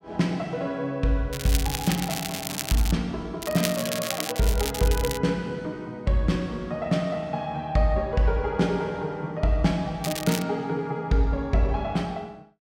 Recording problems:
crackle; from 1.5 to 3 s, from 3.5 to 5 s and at 10 s; loose cable, SNR 6 dB

